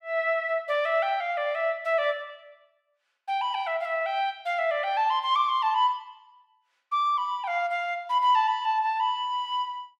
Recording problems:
none

